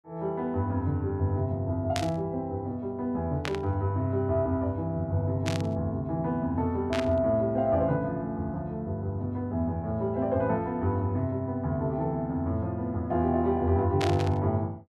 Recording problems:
burst of static; 5 times, first at 2 s; peak 0 dB vs average level

